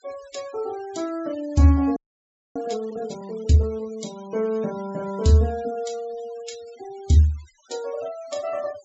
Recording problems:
treble cut off; nothing above 7.7 kHz
denoising artefacts; signal-to-artefact ratio 23 dB
audio freezing; at 2 s for 0.5 s

